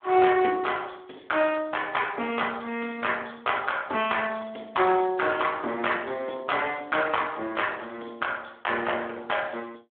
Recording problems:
telephone audio; 260 Hz to 3.4 kHz, Speex

